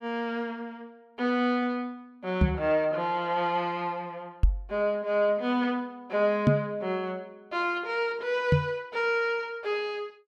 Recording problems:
microphone thump; 4 times, first at 2.5 s; peak +9 dB vs average level

